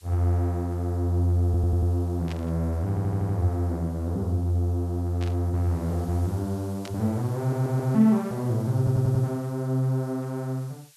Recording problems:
background hiss; SNR 26 dB
audio stuttering; 4 times, first at 1.5 s
burst of static; at 2.5 s, at 5 s and at 7 s; peak -11 dB vs average level

